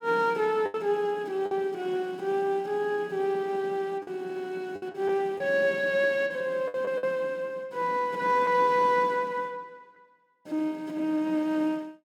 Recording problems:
packet loss; 4% of the sound replaced, filled with the last packet

